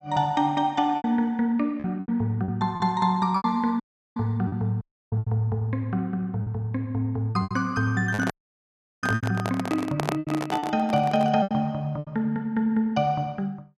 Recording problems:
packet loss; 9% of the sound replaced, filled with repeated pitch periods
dropout; at 4 s, at 5 s and at 8.5 s for 0.5 s
microphone handling noise; from 8 to 11 s; peak +3 dB vs average level

